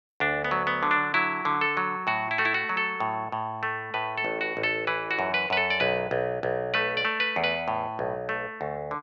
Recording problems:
none

